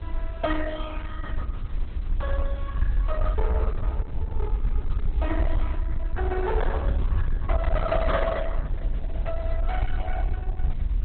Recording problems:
lossy codec; Opus, then MP2, log-spectral distance 2 dB
distortion; hard clipping, signal-to-distortion ratio 12 dB
background hiss; SNR 19 dB
low-frequency rumble; below 62 Hz, SNR -3 dB
crackle; at 5 s; loose cable, SNR 28 dB

